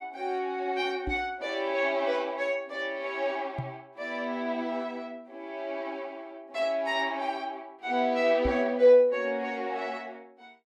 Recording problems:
knock on the microphone; at 1 s, at 3.5 s and at 8.5 s; peak 0 dB vs average level

